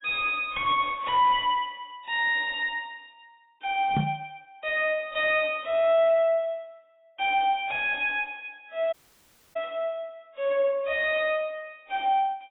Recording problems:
lossy compression; AAC, log-spectral distance 3 dB, nothing above 3.4 kHz
distorted audio; soft clipping, signal-to-distortion ratio 11 dB
microphone bump; at 4 s; peak +3 dB vs average level
dropout; at 9 s for 0.5 s

